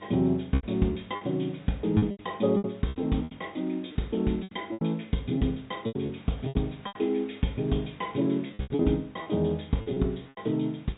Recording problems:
treble missing; nothing above 3.7 kHz
lossy compression; MP2, log-spectral distance 5 dB
hum; 50 Hz, harmonics up to 1.1 kHz, SNR 27 dB
hiss; SNR 26 dB
lost packets; 13% of the sound replaced, filled with repeated pitch periods

